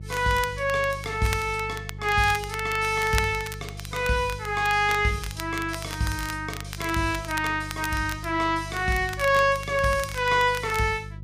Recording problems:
hum; 50 Hz, harmonics up to 350 Hz, SNR 14 dB
crackling; vinyl, SNR 14 dB

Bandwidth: 15 kHz